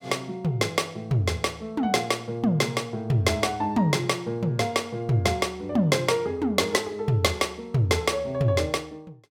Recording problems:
none

